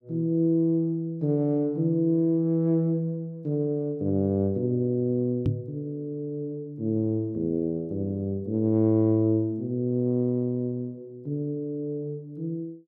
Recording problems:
microphone thump; at 5.5 s; peak +4 dB vs average level

